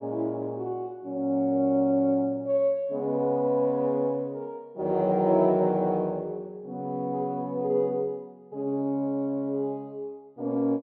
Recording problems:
none

